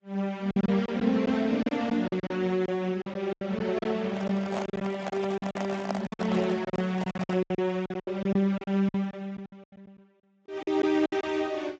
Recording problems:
codec artefacts; AAC, then Speex, log-spectral distance 3 dB, nothing above 7.3 kHz
lost packets; 14% of the sound replaced, filled with silence
handling noise; from 4 to 7.5 s; peak +2 dB vs average level

